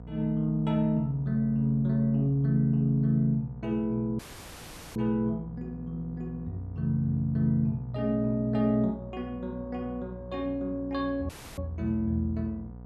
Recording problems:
hum; 60 Hz, harmonics up to 960 Hz, SNR 16 dB
dropout; at 4 s for 1 s and at 11 s

